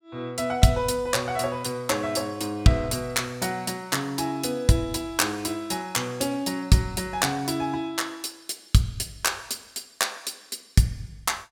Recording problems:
none

